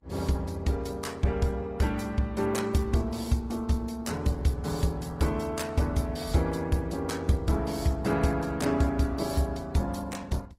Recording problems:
lossy codec; Vorbis, then Opus, log-spectral distance 3 dB, nothing above 16.5 kHz

